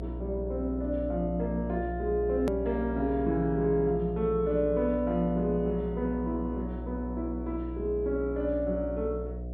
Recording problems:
treble cut off; nothing above 5.5 kHz
hum; 60 Hz, harmonics up to 720 Hz, SNR 8 dB
edit click; at 2.5 s

